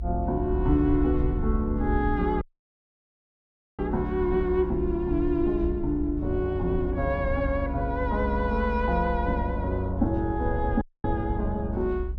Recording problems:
rumble; below 64 Hz, SNR 5 dB
audio cutting out; at 2.5 s for 1.5 s and at 11 s

